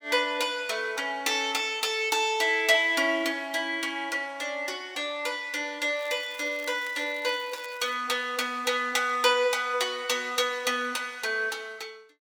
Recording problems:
crackle; from 6 to 8 s; loose cable, SNR 22 dB

